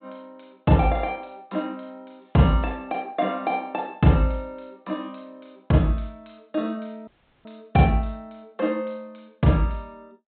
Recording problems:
treble cut off; nothing above 4 kHz
audio cutting out; at 7 s

